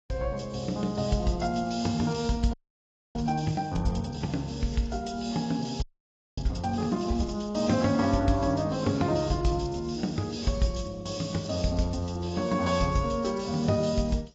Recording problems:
lossy codec; AAC, log-spectral distance 4 dB, nothing above 7.3 kHz
frozen audio; at 2.5 s for 0.5 s and at 6 s for 0.5 s

